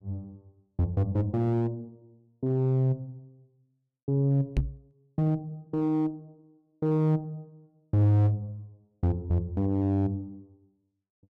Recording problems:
distortion; hard clipping, uneven, signal-to-distortion ratio 10 dB
knock on the microphone; at 4.5 s; peak +5 dB vs average level

